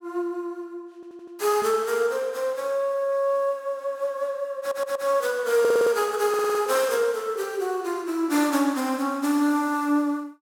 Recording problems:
audio stuttering; 4 times, first at 1 s

